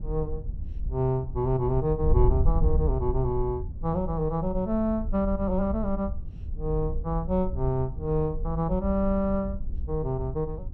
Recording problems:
wind on the microphone; below 68 Hz, SNR 4 dB

